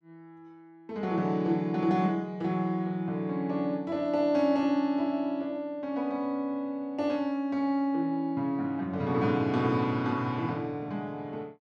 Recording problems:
none

